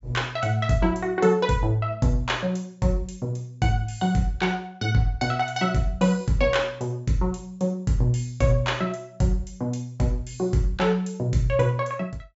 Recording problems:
low-pass filter; nothing above 8 kHz

